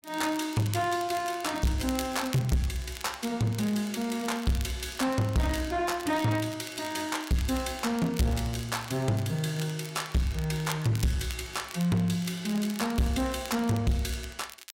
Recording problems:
distortion; soft clipping, signal-to-distortion ratio 7 dB
crackle; vinyl, SNR 15 dB

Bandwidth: 16 kHz